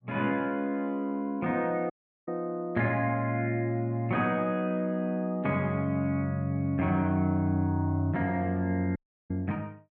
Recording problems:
dropout; at 2 s and at 9 s

